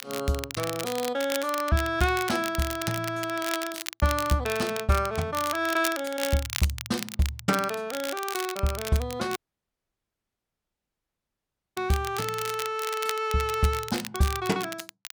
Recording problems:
crackling; vinyl, SNR 8 dB
dropout; at 9.5 s for 2.5 s

